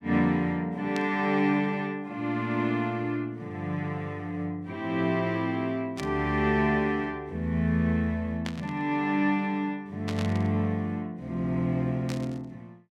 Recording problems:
burst of static; 5 times, first at 1 s; peak -4 dB vs average level

